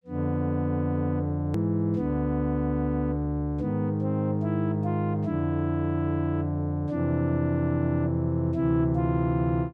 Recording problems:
hard cut with a click; at 1.5 s

